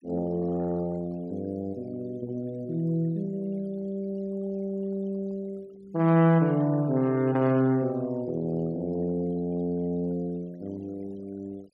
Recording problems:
denoising artefacts; signal-to-artefact ratio 28 dB

